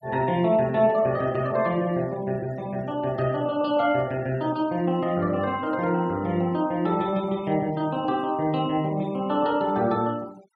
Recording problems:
noise reduction artefacts; signal-to-artefact ratio 25 dB

